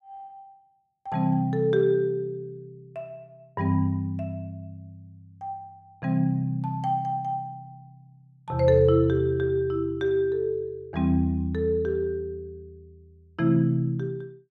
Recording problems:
none

